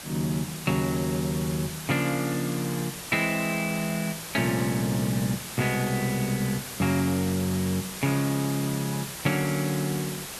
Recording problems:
hiss; slope -1 dB per octave, SNR 8 dB

